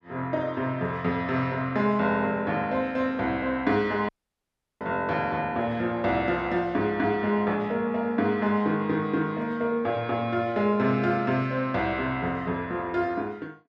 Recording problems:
audio cutting out; at 4 s for 0.5 s

